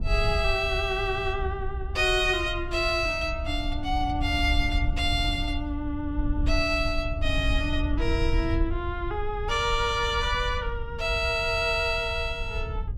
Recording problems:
wind on the microphone; below 74 Hz, SNR 6 dB

